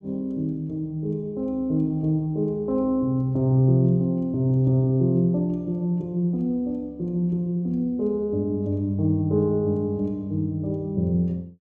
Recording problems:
none

